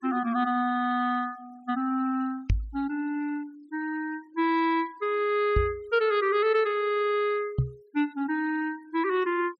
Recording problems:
denoising artefacts; signal-to-artefact ratio 25 dB
microphone bump; at 2.5 s, at 5.5 s and at 7.5 s; peak +6 dB vs average level

